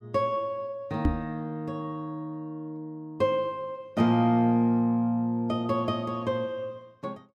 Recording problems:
knock on the microphone; at 1 s; peak +6 dB vs average level

